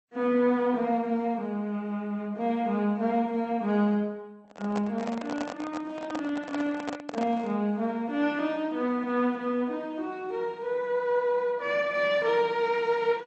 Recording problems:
lossy codec; AAC, then MP2, log-spectral distance 2 dB
handling noise; from 4.5 to 7.5 s; peak -1 dB vs average level

